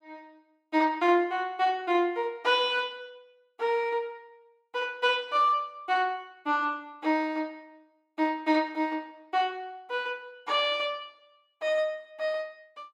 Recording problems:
none

